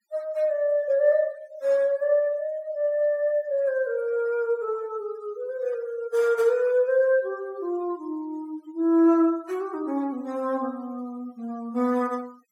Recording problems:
noise reduction artefacts; signal-to-artefact ratio 27 dB

